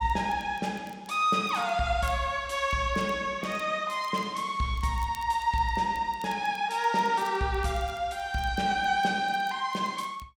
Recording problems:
crackle; vinyl, SNR 27 dB

